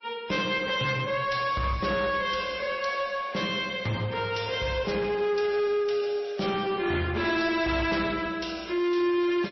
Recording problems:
lossy codec; MP3, log-spectral distance 4 dB, nothing above 5.8 kHz
distorted audio; soft clipping, signal-to-distortion ratio 10 dB

